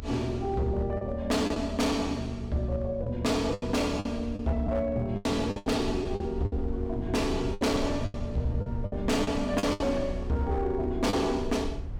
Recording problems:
distorted audio; hard clipping, signal-to-distortion ratio 11 dB
low-frequency rumble; below 84 Hz, SNR 9 dB
lost packets; 9% of the sound replaced, filled with the last packet

